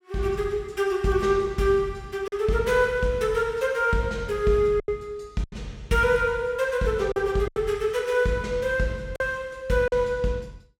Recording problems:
lost packets; 4% of the sound replaced, filled with silence

